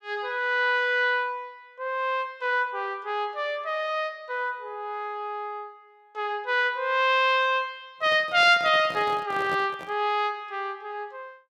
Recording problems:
microphone handling noise; from 8 to 10 s; peak -8 dB vs average level

